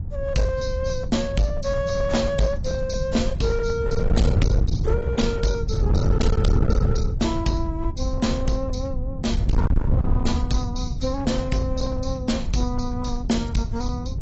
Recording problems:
lossy codec; AAC, log-spectral distance 2 dB, nothing above 7.6 kHz
distortion; hard clipping, uneven, signal-to-distortion ratio 6 dB
rumble; below 120 Hz, SNR 8 dB
wind on the microphone; below 110 Hz, SNR 1 dB

